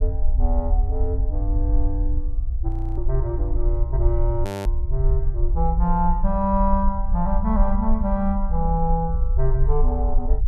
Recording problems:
rumble; below 54 Hz, SNR -2 dB
frozen audio; at 2.5 s and at 4.5 s

